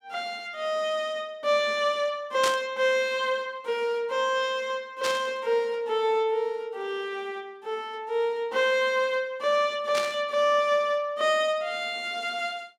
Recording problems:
static burst; at 2.5 s, at 5 s and at 10 s; peak +1 dB vs average level

